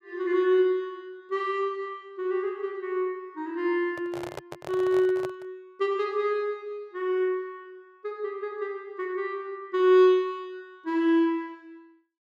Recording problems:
handling noise; from 4 to 5.5 s; peak -6 dB vs average level

